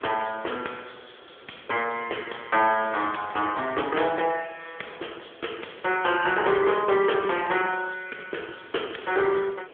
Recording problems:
phone line; 320 Hz to 3.4 kHz, AMR-NB
hiss; SNR 27 dB
wind noise; below 760 Hz, SNR 23 dB

